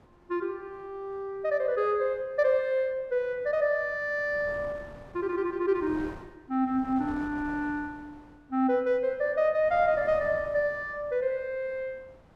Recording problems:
wind noise; below 790 Hz, SNR 21 dB

